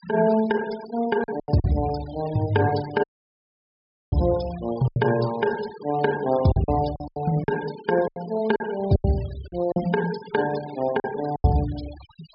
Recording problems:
low-pass filter; nothing above 5.5 kHz
noise reduction artefacts; signal-to-artefact ratio 18 dB
lost packets; 9% of the sound replaced, filled with silence
audio cutting out; at 3 s for 1 s

